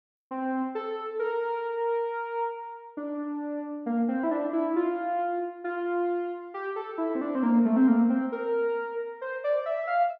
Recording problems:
none

